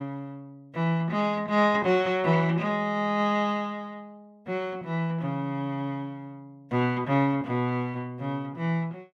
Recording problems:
none

